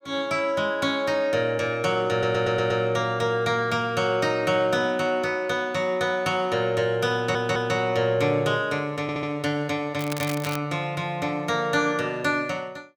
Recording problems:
stutter; at 2 s, at 7 s and at 9 s
crackle; at 10 s; loose cable, SNR 12 dB

